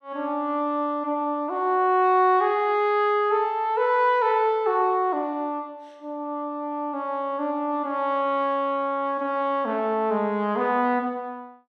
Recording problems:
none

